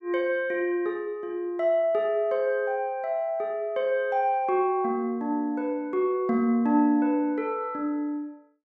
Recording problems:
none

